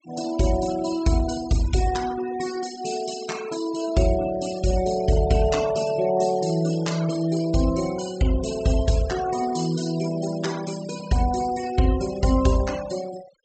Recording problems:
treble cut off; nothing above 8 kHz
noise reduction artefacts; signal-to-artefact ratio 15 dB

